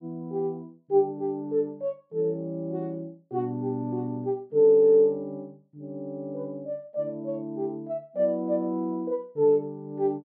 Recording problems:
none

